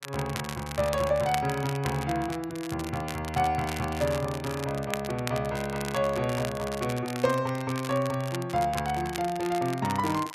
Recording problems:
crackling; vinyl, SNR 11 dB

